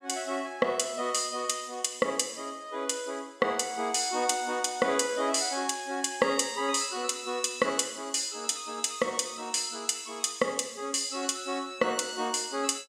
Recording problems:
none

